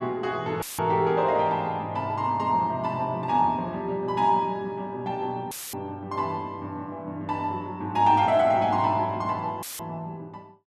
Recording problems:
audio cutting out; at 0.5 s, at 5.5 s and at 9.5 s; filled with static

